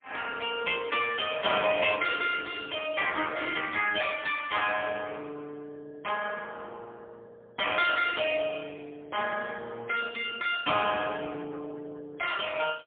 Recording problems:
phone line; 260 Hz to 3.5 kHz, AMR-NB, then MP3

